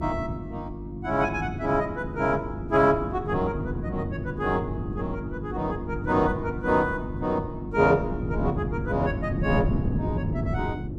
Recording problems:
hum; 50 Hz, harmonics up to 350 Hz, SNR 8 dB
wind on the microphone; below 220 Hz, SNR 6 dB

